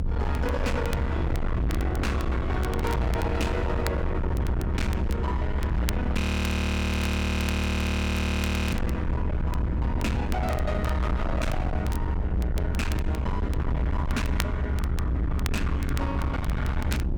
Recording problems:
distorted audio; hard clipping, signal-to-distortion ratio 7 dB
hum; 60 Hz, harmonics up to 360 Hz, SNR 4 dB
rumble; below 110 Hz, SNR 0 dB
crackling; vinyl, SNR 15 dB
frozen audio; at 6 s for 2.5 s

